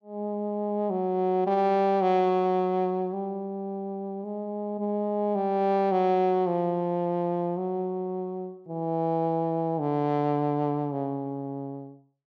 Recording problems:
none

